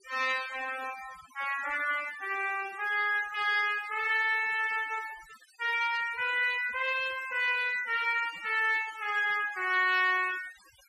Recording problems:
noise reduction artefacts; signal-to-artefact ratio 17 dB

